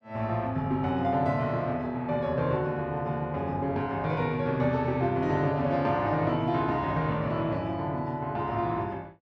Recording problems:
none

